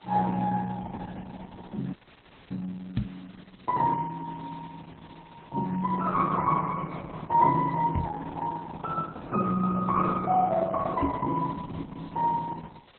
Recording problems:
codec artefacts; MP3, then Opus, log-spectral distance 8 dB
background hiss; SNR 26 dB
frozen audio; at 2 s for 0.5 s
microphone thump; at 3 s, at 8 s and at 11 s; peak +5 dB vs average level

